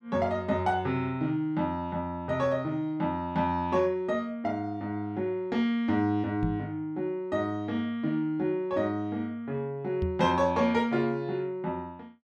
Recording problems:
microphone thump; at 6.5 s and at 10 s; peak +2 dB vs average level

